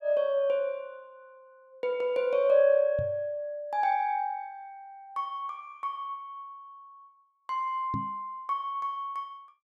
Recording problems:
knock on the microphone; at 3 s and at 8 s; peak -1 dB vs average level

